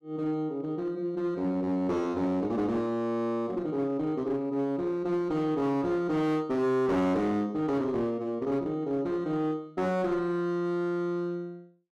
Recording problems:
distortion; hard clipping, uneven, signal-to-distortion ratio 11 dB

